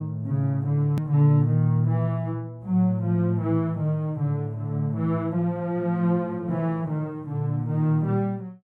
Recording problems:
edit click; at 1 s

